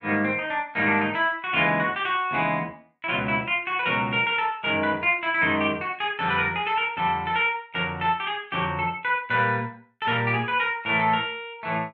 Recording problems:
none

